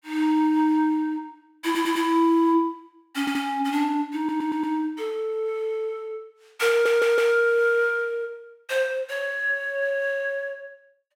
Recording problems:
audio stuttering; 4 times, first at 1.5 s

